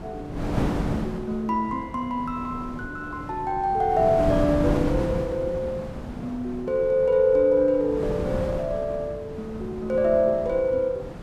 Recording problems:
wind on the microphone; below 450 Hz, SNR 8 dB

